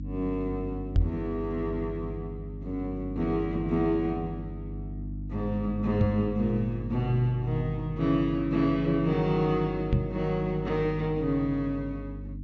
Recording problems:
treble cut off; nothing above 7.6 kHz
electrical hum; 50 Hz, harmonics up to 300 Hz, SNR 9 dB
knock on the microphone; at 1 s, at 6 s and at 10 s; peak +8 dB vs average level

